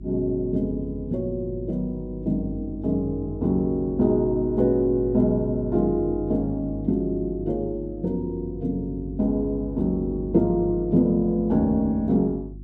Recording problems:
electrical hum; 50 Hz, harmonics up to 350 Hz, SNR 13 dB

